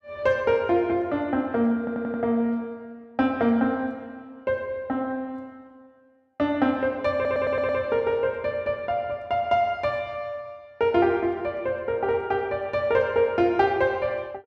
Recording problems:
audio stuttering; at 2 s and at 7 s

